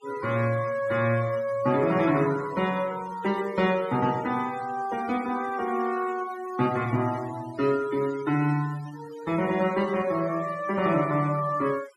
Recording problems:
noise reduction artefacts; signal-to-artefact ratio 19 dB

